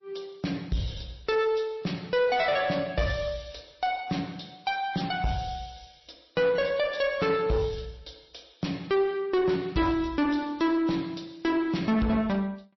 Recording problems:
lossy compression; MP3, log-spectral distance 4 dB, nothing above 5.7 kHz
distortion; soft clipping, signal-to-distortion ratio 10 dB

